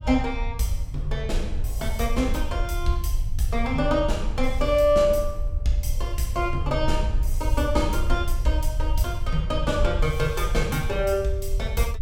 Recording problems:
rumble; below 62 Hz, SNR 3 dB

